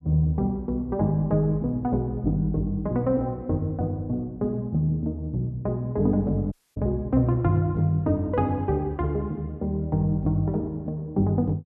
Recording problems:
audio cutting out; at 6.5 s

